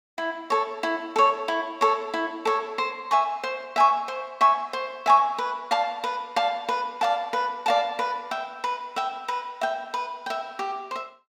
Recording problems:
none

